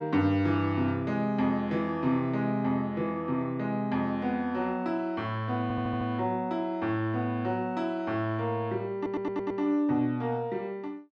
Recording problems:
audio stuttering; at 5.5 s and at 9 s

